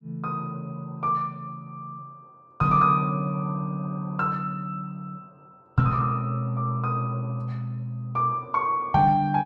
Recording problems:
none

